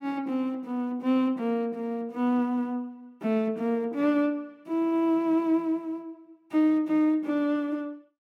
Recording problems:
none

